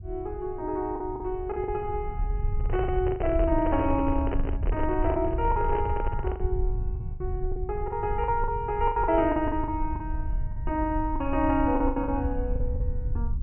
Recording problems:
treble cut off; nothing above 3 kHz
low-frequency rumble; below 76 Hz, SNR 4 dB
packet loss; 10% of the sound replaced, filled with the last packet
microphone handling noise; from 2.5 to 6.5 s; peak -1 dB vs average level

